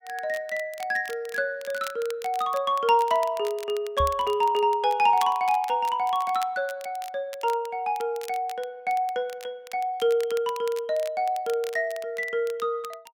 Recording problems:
crackling; vinyl, SNR 19 dB
knock on the microphone; at 4 s; peak -1 dB vs average level

